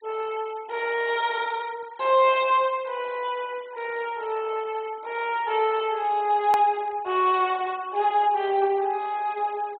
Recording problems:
treble missing; nothing above 4 kHz
denoising artefacts; signal-to-artefact ratio 24 dB
edit click; at 6.5 s

